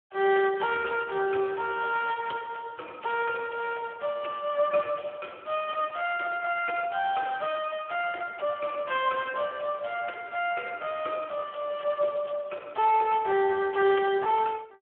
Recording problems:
phone line; 280 Hz to 2.4 kHz, Speex

